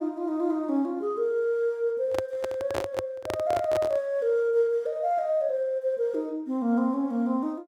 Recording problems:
handling noise; from 2 to 4 s; peak +1 dB vs average level

